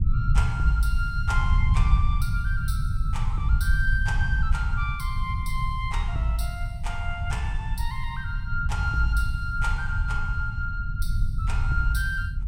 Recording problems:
low-frequency rumble; below 90 Hz, SNR -3 dB

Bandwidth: 16.5 kHz